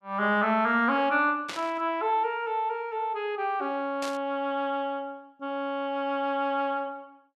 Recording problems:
static burst; at 1.5 s and at 4 s; peak -4 dB vs average level

